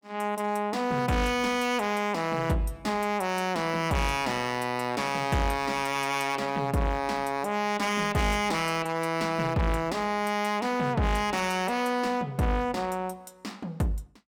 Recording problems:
distorted audio; hard clipping, uneven, signal-to-distortion ratio 8 dB

